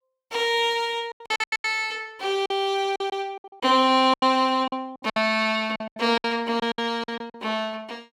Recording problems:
packet loss; 15% of the sound replaced, filled with silence

